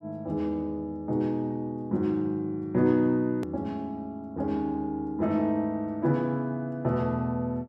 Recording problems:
hard cut with a click; at 3.5 s

